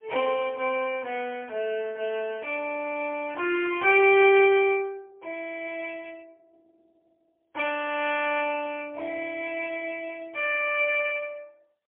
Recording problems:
telephone audio; 300 Hz to 3.2 kHz, AMR-NB, then MP3

